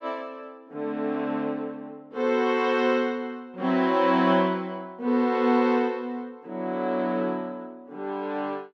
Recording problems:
none

